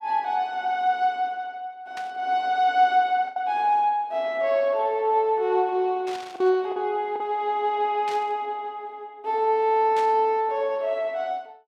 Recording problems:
packet loss; 1.7% of the sound replaced, filled with the last packet
static burst; 4 times, first at 2 s; peak -10 dB vs average level

